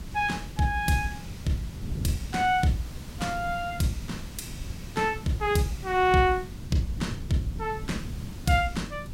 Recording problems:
background hiss; slope -3 dB per octave, SNR 19 dB
wind noise; below 170 Hz, SNR 12 dB

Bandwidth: 16 kHz